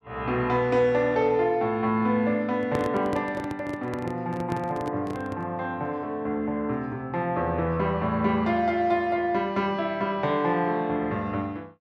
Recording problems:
microphone handling noise; from 2.5 to 5.5 s; peak -1 dB vs average level

